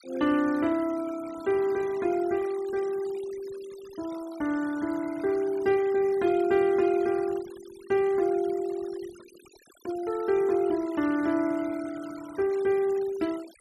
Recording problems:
denoising artefacts; signal-to-artefact ratio 20 dB

